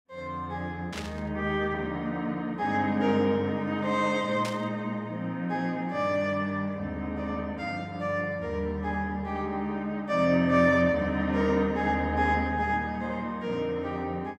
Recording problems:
static burst; at 1 s and at 4.5 s; peak -4 dB vs average level

